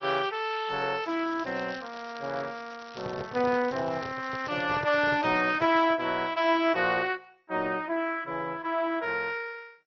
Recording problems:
lossy codec; MP2, then Opus, log-spectral distance 6 dB, nothing above 5.7 kHz
crackle; from 1 to 6 s; loose cable, SNR 23 dB
microphone handling noise; from 3 to 6 s; peak -6 dB vs average level

